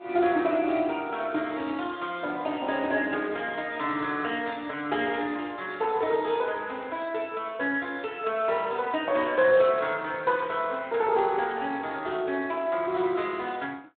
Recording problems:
telephone audio; 190 Hz to 3.5 kHz, Speex

